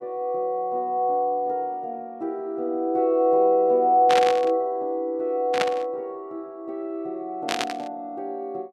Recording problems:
burst of static; at 4 s, at 5.5 s and at 7.5 s; peak +3 dB vs average level

